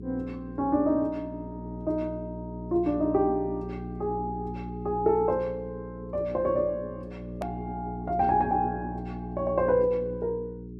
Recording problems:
hum; 60 Hz, harmonics up to 420 Hz, SNR 9 dB
click at an edit; at 7.5 s

